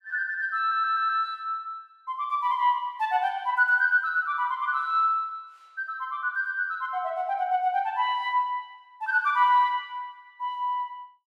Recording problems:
stutter; at 0.5 s

